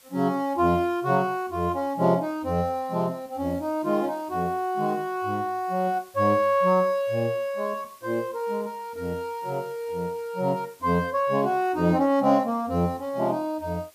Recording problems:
background hiss; slope 0 dB per octave, SNR 27 dB

